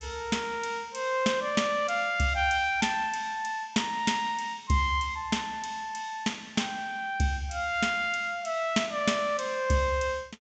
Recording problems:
treble missing; nothing above 8 kHz

